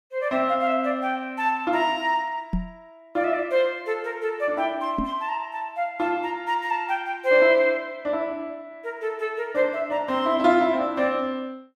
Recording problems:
microphone thump; at 2.5 s and at 5 s; peak +1 dB vs average level

